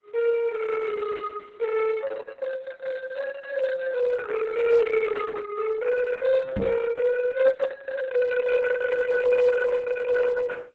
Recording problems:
codec artefacts; Opus, then Opus, log-spectral distance 4 dB, nothing above 7.6 kHz
microphone bump; at 6.5 s; peak -2 dB vs average level

